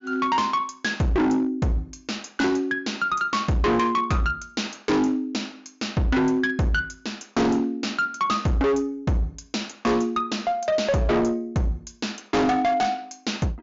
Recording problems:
treble cut off; nothing above 7.3 kHz
distortion; hard clipping, uneven, signal-to-distortion ratio 6 dB

